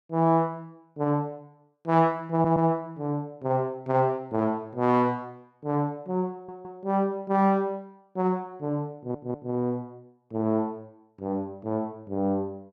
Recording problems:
stutter; at 2.5 s, at 6.5 s and at 9 s

